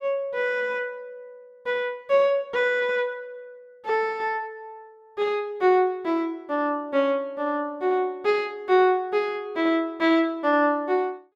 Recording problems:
none

